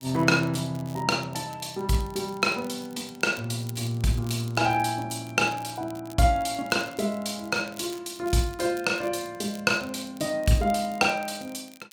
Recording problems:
crackling; vinyl, SNR 22 dB

